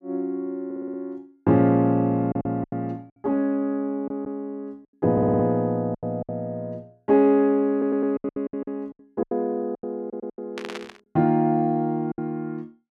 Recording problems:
packet loss; 9% of the sound replaced, filled with silence
audio stuttering; 4 times, first at 0.5 s
static burst; at 11 s; peak -7 dB vs average level

